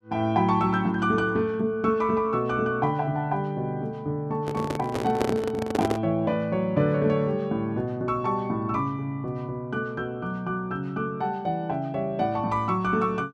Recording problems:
microphone handling noise; from 4.5 to 6 s; peak +3 dB vs average level

